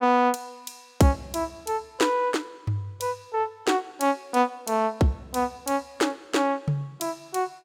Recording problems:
none

